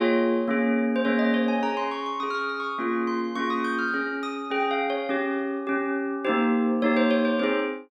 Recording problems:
none

